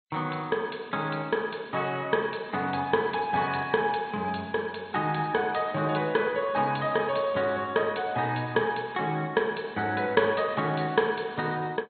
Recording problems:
codec artefacts; MP2, log-spectral distance 8 dB, nothing above 4.2 kHz

